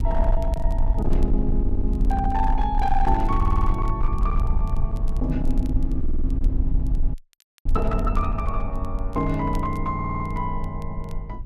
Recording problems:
distorted audio; hard clipping, uneven, signal-to-distortion ratio 12 dB
rumble; below 52 Hz, strongest tone 20 Hz, SNR -1 dB
crackling; vinyl, SNR 28 dB
stutter; 4 times, first at 1.5 s
frozen audio; at 7 s for 0.5 s

